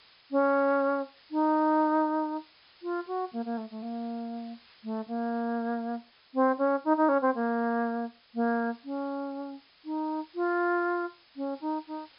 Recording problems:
treble cut off; nothing above 5.5 kHz
hiss; SNR 28 dB

